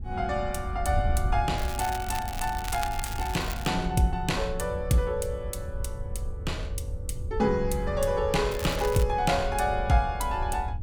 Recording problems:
wind noise; below 84 Hz, SNR 7 dB
crackling; from 1.5 to 3.5 s and at 8.5 s; loose cable, SNR 11 dB

